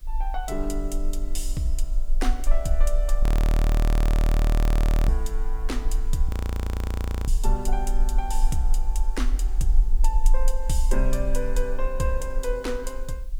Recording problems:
background hiss; SNR 26 dB
low-frequency rumble; below 40 Hz, strongest tone 22 Hz, SNR -5 dB
audio freezing; at 3 s for 2 s and at 6.5 s for 1 s

